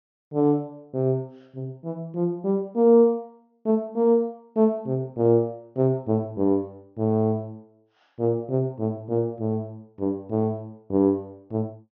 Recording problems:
treble missing; nothing above 6.6 kHz

